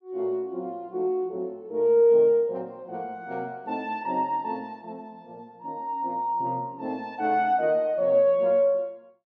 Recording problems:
none

